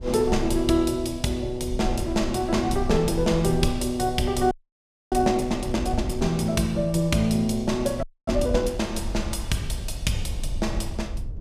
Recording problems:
rumble; below 74 Hz, SNR 10 dB
frozen audio; at 4.5 s for 0.5 s and at 8 s

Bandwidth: 15 kHz